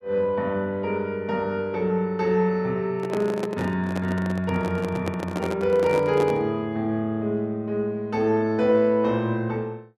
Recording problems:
handling noise; from 3 to 6.5 s; peak -1 dB vs average level

